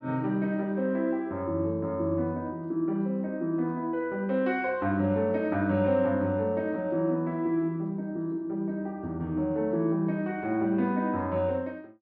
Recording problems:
none

